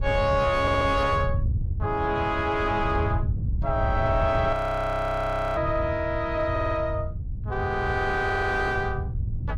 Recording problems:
distortion; soft clipping, signal-to-distortion ratio 9 dB
wind noise; below 110 Hz, SNR 4 dB
stutter; at 0.5 s, at 6.5 s and at 8 s
audio freezing; at 4.5 s for 1 s

